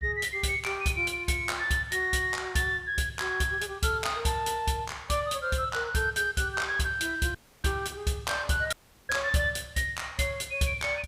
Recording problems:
dropout; at 7.5 s and at 8.5 s

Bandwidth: 15.5 kHz